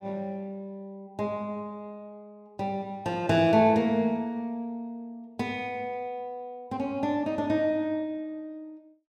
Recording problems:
none

